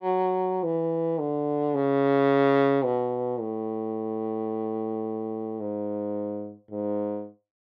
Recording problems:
none

